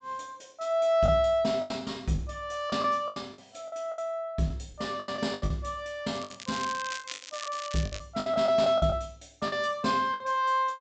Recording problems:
treble cut off; nothing above 8 kHz
lost packets; 12% of the sound replaced, filled with the last packet
crackling; from 6 to 8 s; loose cable, SNR 11 dB

